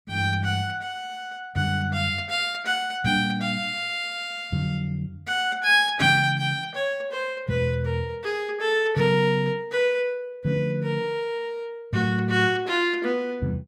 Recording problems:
none

